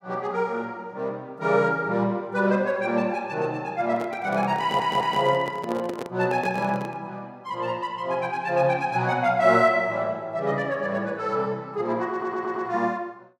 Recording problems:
microphone handling noise; from 4 to 7 s; peak -4 dB vs average level
audio stuttering; at 4.5 s and at 12 s

